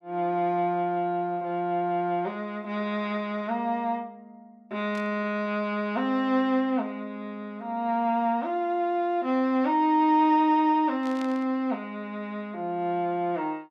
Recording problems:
static burst; at 5 s and at 11 s; peak -13 dB vs average level

